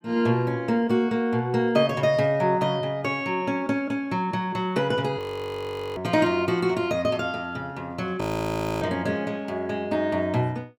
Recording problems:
frozen audio; at 5 s for 1 s and at 8 s for 0.5 s

